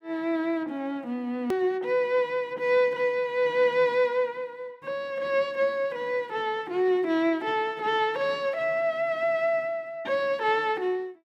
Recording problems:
hard cut with a click; at 1.5 s

